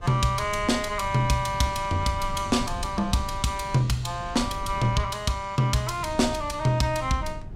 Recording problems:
wind noise; below 120 Hz, SNR 13 dB

